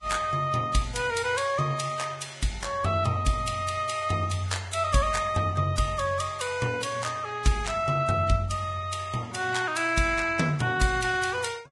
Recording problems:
lossy compression; Vorbis, log-spectral distance 4 dB, nothing above 10.7 kHz

